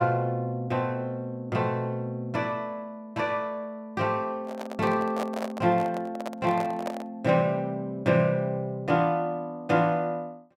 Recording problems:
microphone handling noise; from 4.5 to 7 s; peak -1 dB vs average level

